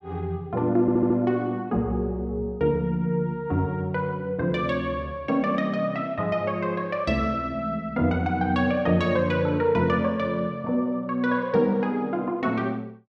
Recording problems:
audio stuttering; at 1 s

